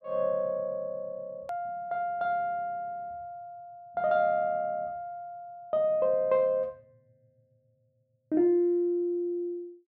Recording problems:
edit click; at 1.5 s

